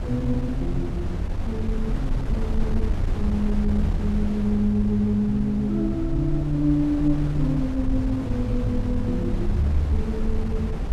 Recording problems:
low-frequency rumble; below 64 Hz, SNR 12 dB
wind on the microphone; below 90 Hz, SNR 5 dB

